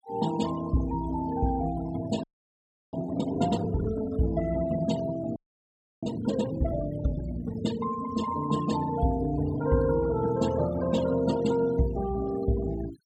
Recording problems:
denoising artefacts; signal-to-artefact ratio 15 dB
audio freezing; at 2 s for 0.5 s and at 5.5 s for 0.5 s

